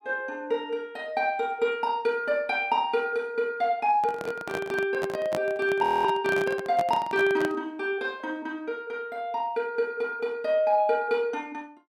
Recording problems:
microphone handling noise; from 4 to 7.5 s; peak -1 dB vs average level
frozen audio; at 6 s

